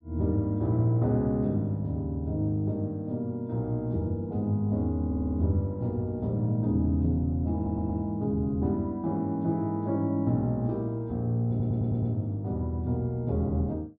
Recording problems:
low-pass filter; nothing above 5.5 kHz
stutter; at 5 s, at 7.5 s and at 12 s

